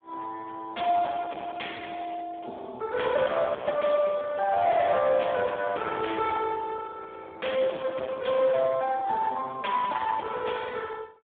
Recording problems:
telephone audio; 280 Hz to 3.4 kHz, Speex
distorted audio; hard clipping, signal-to-distortion ratio 10 dB

